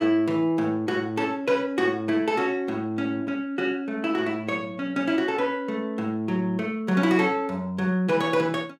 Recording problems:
none

